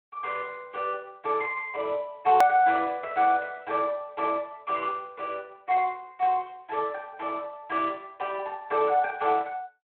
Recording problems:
telephone audio; 340 Hz to 3.4 kHz, Speex
edit click; at 2.5 s

